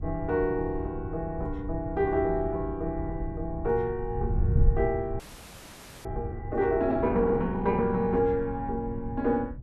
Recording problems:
wind noise; below 110 Hz, SNR 7 dB
frozen audio; at 5 s for 1 s

